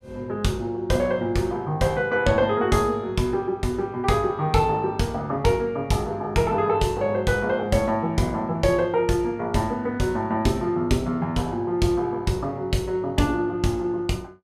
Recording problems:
none

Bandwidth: 15.5 kHz